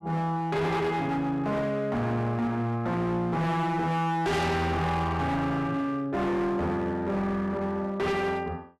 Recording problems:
distortion; hard clipping, signal-to-distortion ratio 7 dB

